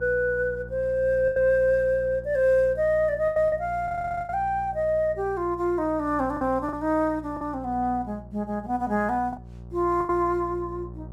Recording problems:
electrical hum; 60 Hz, harmonics up to 780 Hz, SNR 17 dB
lost packets; 5% of the sound replaced, filled with the last packet
audio stuttering; at 4 s

